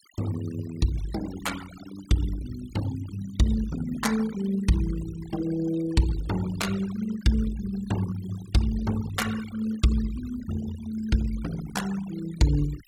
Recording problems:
denoising artefacts; signal-to-artefact ratio 14 dB

